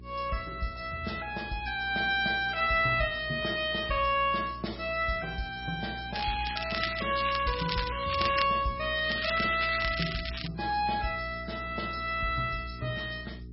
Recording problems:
lossy codec; MP3, log-spectral distance 8 dB, nothing above 5.3 kHz
hum; 60 Hz, harmonics up to 420 Hz, SNR 15 dB
crackling; from 6 to 8.5 s and from 9 to 10 s; loose cable, SNR 6 dB

